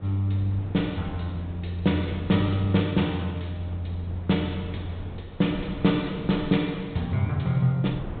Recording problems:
low-pass filter; nothing above 4 kHz
wind on the microphone; below 300 Hz, SNR 14 dB

